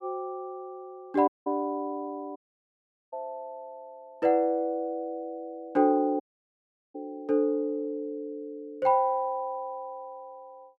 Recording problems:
dropout; at 1.5 s, at 2.5 s for 1 s and at 6 s for 0.5 s

